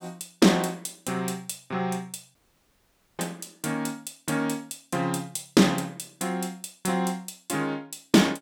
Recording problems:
audio cutting out; at 2.5 s for 1 s

